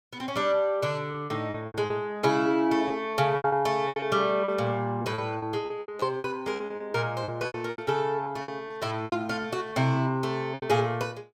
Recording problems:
lost packets; 13% of the sound replaced, filled with repeated pitch periods

